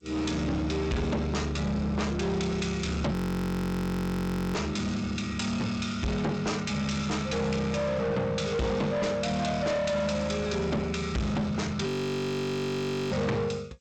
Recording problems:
lossy codec; G.722, log-spectral distance 3 dB, nothing above 17.7 kHz
distorted audio; soft clipping, signal-to-distortion ratio 7 dB
audio freezing; at 3 s for 1.5 s and at 12 s for 1 s

